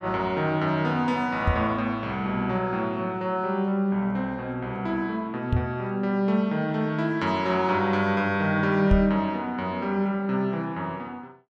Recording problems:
knock on the microphone; at 1.5 s, at 5.5 s and at 9 s; peak +6 dB vs average level

